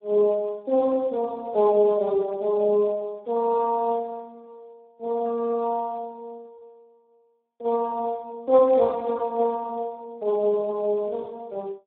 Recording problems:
phone line; 280 Hz to 2.1 kHz, Speex

